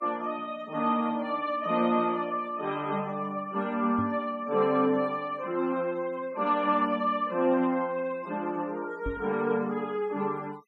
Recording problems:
denoising artefacts; signal-to-artefact ratio 26 dB
knock on the microphone; at 4 s and at 9 s; peak -3 dB vs average level

